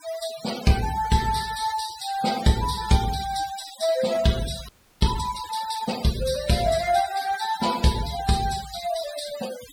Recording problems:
noise reduction artefacts; signal-to-artefact ratio 12 dB
audio freezing; at 4.5 s

